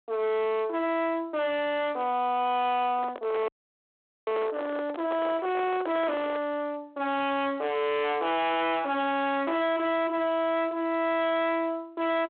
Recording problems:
telephone audio; 900 Hz to 3.6 kHz, G.726
distorted audio; hard clipping, uneven, signal-to-distortion ratio 4 dB
microphone handling noise; from 3 to 6.5 s; peak -4 dB vs average level
frozen audio; at 3.5 s for 1 s

